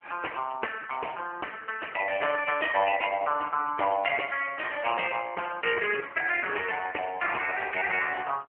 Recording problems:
phone line; 370 Hz to 2.9 kHz, AMR-NB

